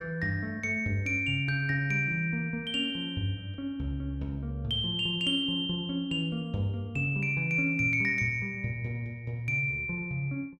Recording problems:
none

